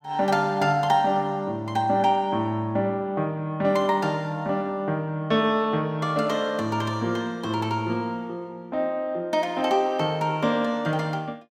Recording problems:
none

